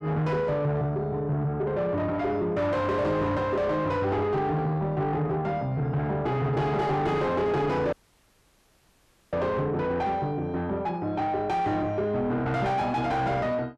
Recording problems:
distorted audio; soft clipping, signal-to-distortion ratio 7 dB
audio cutting out; at 8 s for 1.5 s

